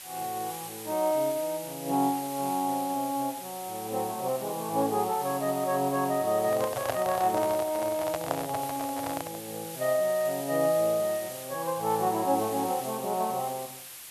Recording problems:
hiss; slope +2 dB per octave, SNR 11 dB
handling noise; from 6.5 to 9.5 s; peak +3 dB vs average level

